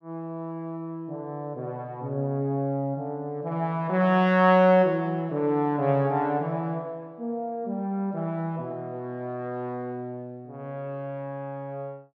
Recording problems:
none

